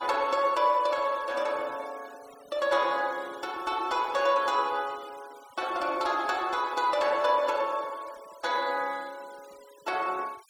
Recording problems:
denoising artefacts; signal-to-artefact ratio 23 dB

